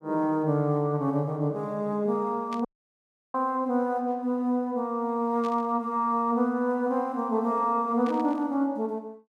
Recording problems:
static burst; at 2.5 s, at 5.5 s and at 8 s; peak -12 dB vs average level
audio cutting out; at 2.5 s for 0.5 s

